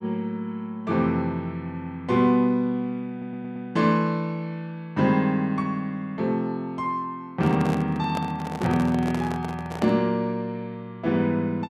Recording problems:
stutter; at 3 s
microphone handling noise; from 7.5 to 10 s; peak -3 dB vs average level

